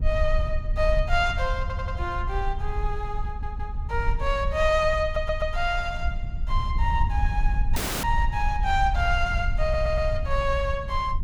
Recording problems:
rumble; below 64 Hz, SNR 2 dB
stutter; 4 times, first at 1.5 s
dropout; at 8 s

